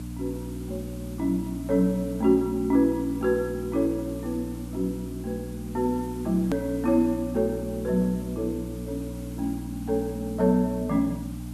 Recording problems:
electrical hum; 60 Hz, harmonics up to 300 Hz, SNR 10 dB
hiss; slope -2 dB per octave, SNR 22 dB
click at an edit; at 6.5 s

